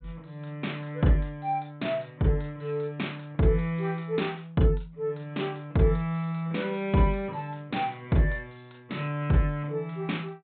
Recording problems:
treble missing; nothing above 4 kHz

